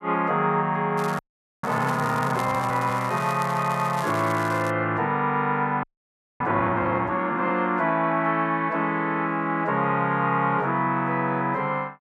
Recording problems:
crackling; from 1 to 4.5 s; loose cable, SNR 17 dB
frozen audio; at 1 s and at 6 s for 0.5 s

